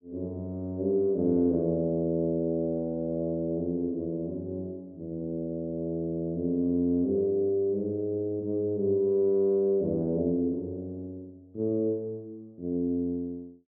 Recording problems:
none

